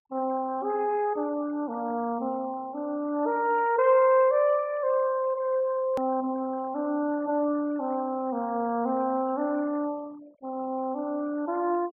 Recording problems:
treble missing; nothing above 3.2 kHz
denoising artefacts; signal-to-artefact ratio 24 dB
hard cut with a click; at 6 s

